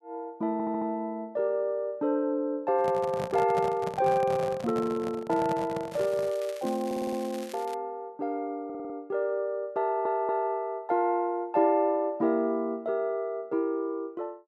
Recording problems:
stutter; 4 times, first at 0.5 s
microphone handling noise; from 2.5 to 6.5 s; peak -3 dB vs average level
crackling; from 6 to 7.5 s; loose cable, SNR 19 dB

